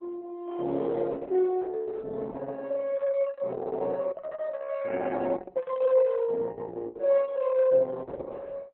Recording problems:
codec artefacts; Opus, log-spectral distance 3 dB, nothing above 3.9 kHz

